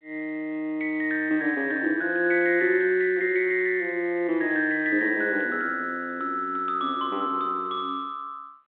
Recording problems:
phone line; 280 Hz to 3.6 kHz, G.726

